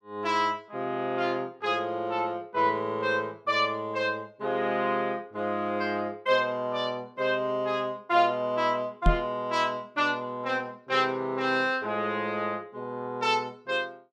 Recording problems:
knock on the microphone; at 9 s; peak +8 dB vs average level

